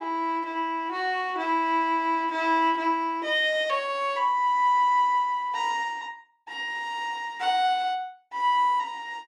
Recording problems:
none

